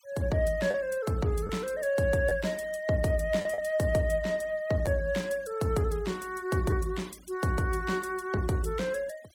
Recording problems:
denoising artefacts; signal-to-artefact ratio 24 dB
packet loss; 1.9% of the sound replaced, filled with the last packet

